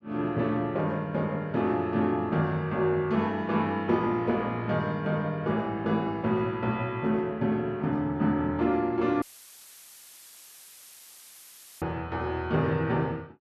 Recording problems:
dropout; at 9 s for 2.5 s; filled with static

